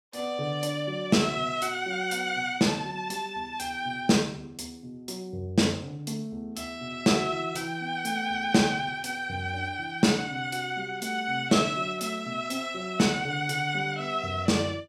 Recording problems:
none

